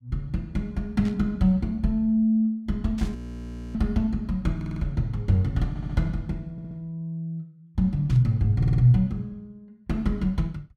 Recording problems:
burst of static; at 1 s, at 3 s and at 8 s; peak -13 dB vs average level
audio freezing; at 3 s for 0.5 s
stutter; 4 times, first at 4.5 s

